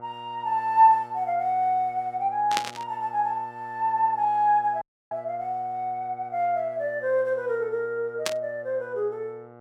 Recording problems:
electrical hum; 60 Hz, harmonics up to 2 kHz, SNR 22 dB
burst of static; at 2.5 s and at 8.5 s; peak +4 dB vs average level
dropout; at 5 s

